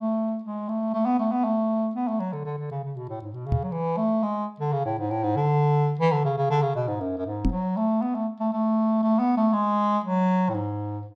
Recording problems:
knock on the microphone; at 3.5 s and at 7.5 s; peak +5 dB vs average level

